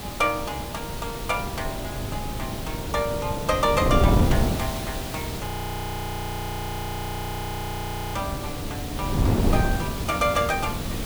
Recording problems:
hiss; slope -2 dB per octave, SNR 7 dB
wind on the microphone; below 270 Hz, SNR 0 dB
crackling; from 3 to 5.5 s; loose cable, SNR 26 dB
audio freezing; at 5.5 s for 2.5 s

